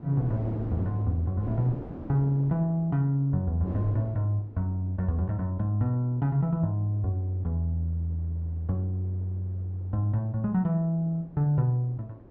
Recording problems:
wind noise; below 380 Hz, SNR 16 dB

